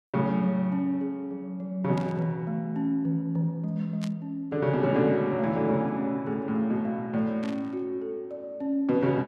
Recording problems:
burst of static; at 2 s, at 4 s and at 7.5 s; peak -9 dB vs average level

